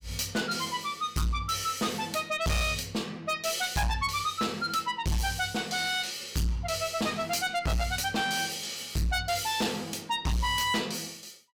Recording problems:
distorted audio; soft clipping, signal-to-distortion ratio 7 dB

